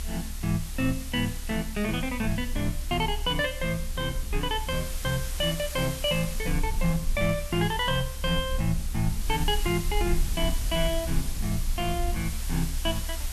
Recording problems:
hiss; slope +1 dB per octave, SNR 10 dB
rumble; below 66 Hz, strongest tone 28 Hz, SNR 6 dB

